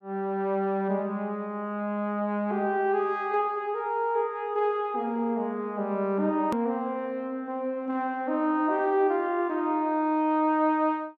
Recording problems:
click at an edit; at 6.5 s

